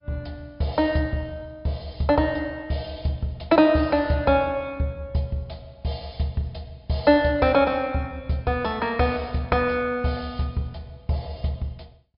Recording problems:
low-pass filter; nothing above 5 kHz
lossy codec; MP2, log-spectral distance 2 dB

